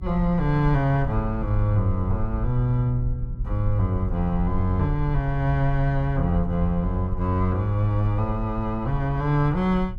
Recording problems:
rumble; below 62 Hz, SNR 8 dB

